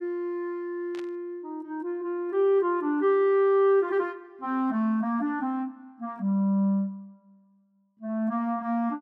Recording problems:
static burst; at 1 s; peak -14 dB vs average level

